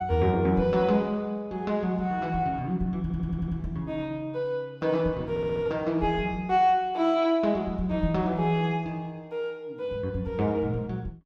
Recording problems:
audio stuttering; at 3 s and at 5.5 s

